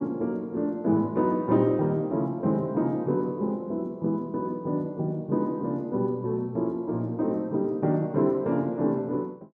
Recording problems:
none

